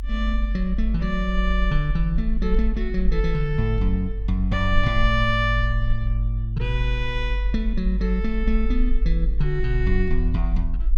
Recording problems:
rumble; below 48 Hz, strongest tone 46 Hz, SNR 1 dB

